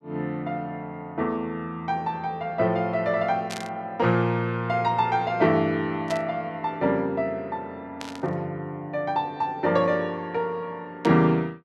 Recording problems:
burst of static; 4 times, first at 3.5 s; peak -5 dB vs average level

